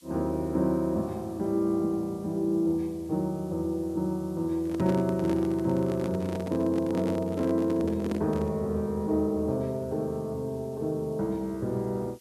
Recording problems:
hiss; slope +4 dB per octave, SNR 28 dB
microphone handling noise; from 4.5 to 8.5 s; peak -1 dB vs average level

